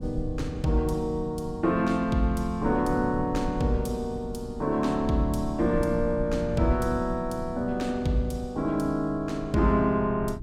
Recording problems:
rumble; below 120 Hz, SNR 12 dB

